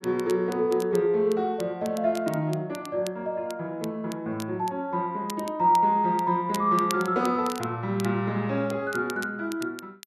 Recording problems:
crackle; vinyl, SNR 18 dB

